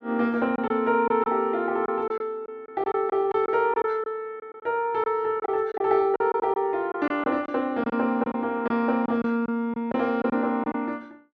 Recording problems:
packet loss; 9% of the sound replaced, filled with silence

